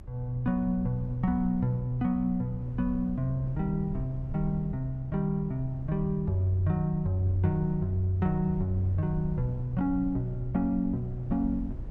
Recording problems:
low-frequency rumble; below 90 Hz, SNR 12 dB

